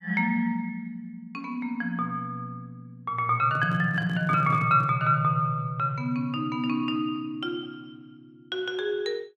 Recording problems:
microphone handling noise; from 3.5 to 5 s; peak -9 dB vs average level

